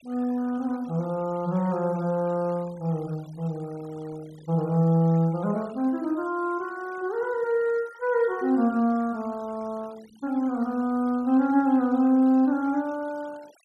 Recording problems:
denoising artefacts; signal-to-artefact ratio 26 dB

